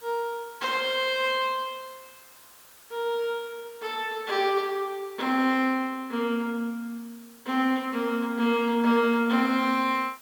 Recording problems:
background hiss; SNR 24 dB

